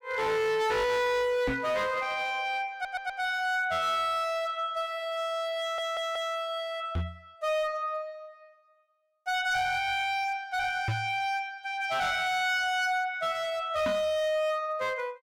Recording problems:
distortion; hard clipping, signal-to-distortion ratio 8 dB
microphone bump; 4 times, first at 1.5 s; peak +2 dB vs average level
stutter; at 2.5 s and at 5.5 s

